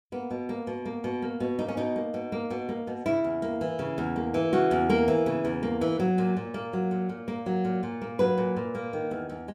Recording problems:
none

